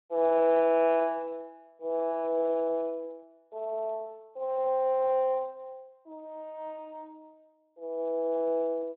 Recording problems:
phone line; 370 Hz to 3.3 kHz, Speex

